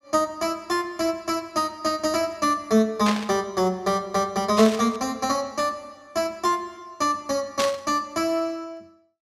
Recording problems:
burst of static; at 3 s, at 4.5 s and at 7.5 s; peak +1 dB vs average level

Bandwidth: 15.5 kHz